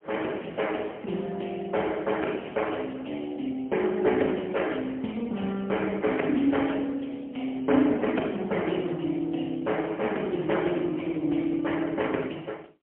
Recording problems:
phone line; 220 Hz to 3.2 kHz, AMR-NB, then MP3

